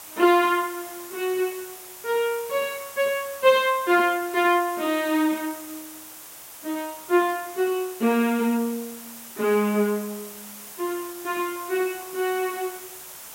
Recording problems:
background hiss; slope -1 dB per octave, SNR 14 dB

